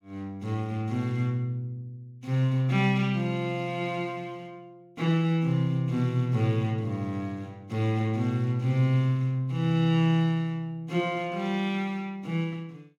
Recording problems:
none

